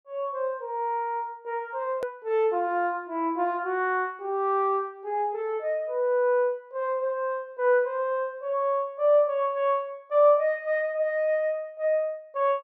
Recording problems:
click at an edit; at 2 s

